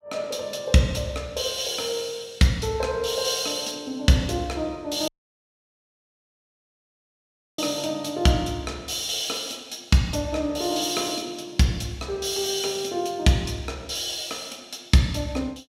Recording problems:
audio cutting out; at 5 s for 2.5 s

